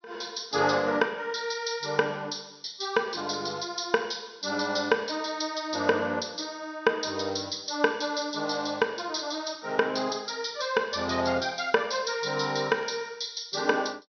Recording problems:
treble missing; nothing above 6.4 kHz

